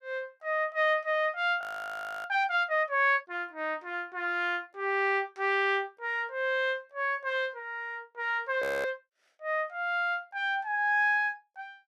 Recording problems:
audio freezing; at 1.5 s for 0.5 s and at 8.5 s

